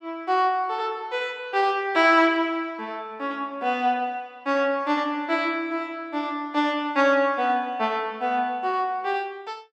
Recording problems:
none

